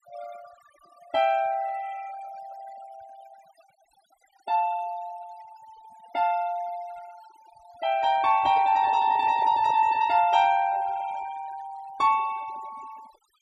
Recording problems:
noise reduction artefacts; signal-to-artefact ratio 21 dB
microphone handling noise; from 8 to 10 s; peak -11 dB vs average level

